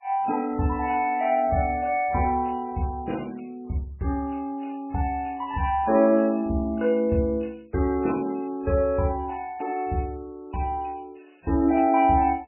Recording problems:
lossy codec; MP3, log-spectral distance 3 dB, nothing above 2.4 kHz

